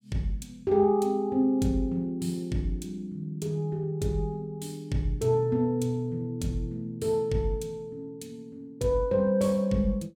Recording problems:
none

